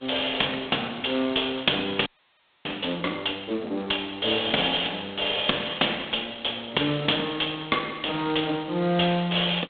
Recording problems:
telephone audio; 220 Hz to 3.6 kHz, G.726
audio freezing; at 2 s for 0.5 s

